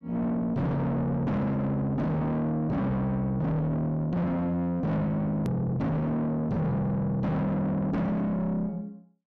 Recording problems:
distorted audio; soft clipping, signal-to-distortion ratio 5 dB
edit click; at 5.5 s

